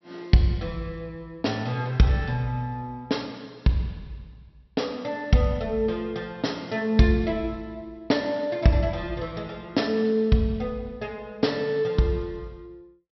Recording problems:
treble cut off; nothing above 5.7 kHz

